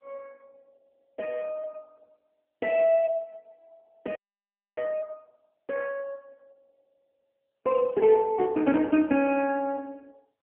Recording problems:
telephone audio; 220 Hz to 3.1 kHz, AMR-NB
audio freezing; at 4 s for 0.5 s
burst of static; at 8 s; peak -19 dB vs average level

